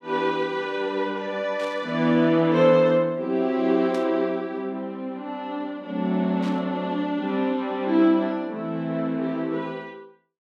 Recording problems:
burst of static; at 1.5 s, at 4 s and at 6.5 s; peak -13 dB vs average level

